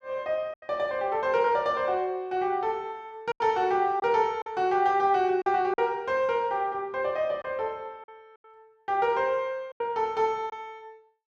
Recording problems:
packet loss; 5% of the sound replaced, filled with silence

